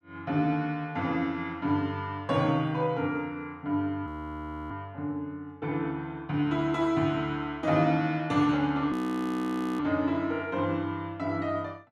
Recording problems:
frozen audio; at 4 s for 0.5 s and at 9 s for 1 s

